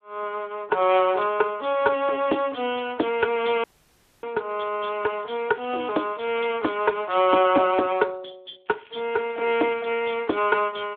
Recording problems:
telephone audio; 260 Hz to 3.5 kHz, Speex
dropout; at 3.5 s for 0.5 s
crackling; from 5 to 7 s and from 8.5 to 10 s; loose cable, SNR 28 dB

